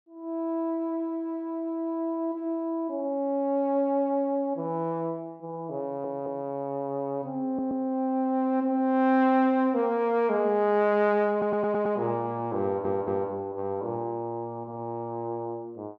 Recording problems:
stutter; 4 times, first at 6 s

